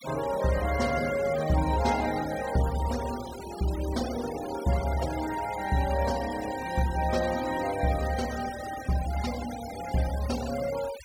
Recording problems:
noise reduction artefacts; signal-to-artefact ratio 13 dB

